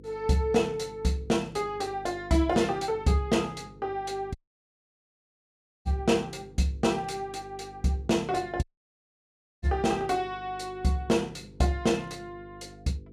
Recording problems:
hum; 50 Hz, harmonics up to 500 Hz, SNR 21 dB
dropout; at 4.5 s for 1.5 s and at 8.5 s for 1 s

